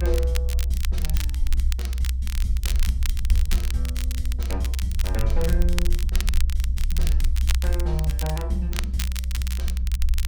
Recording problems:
low-frequency rumble; below 64 Hz, SNR -9 dB
crackle; vinyl, SNR 2 dB

